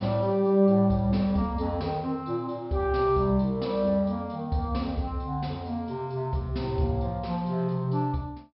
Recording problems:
treble cut off; nothing above 5.4 kHz

